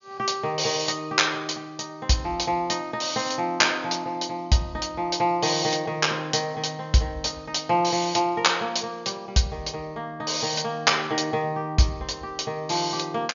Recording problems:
low-pass filter; nothing above 6.9 kHz

